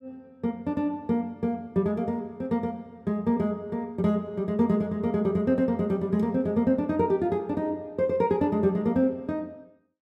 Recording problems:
none

